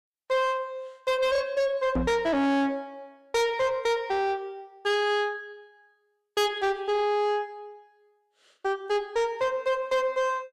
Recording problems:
distortion; soft clipping, signal-to-distortion ratio 6 dB
microphone bump; at 2 s; peak +3 dB vs average level

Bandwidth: 14.5 kHz